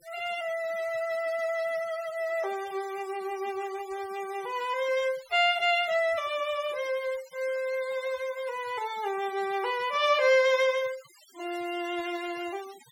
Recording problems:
noise reduction artefacts; signal-to-artefact ratio 19 dB

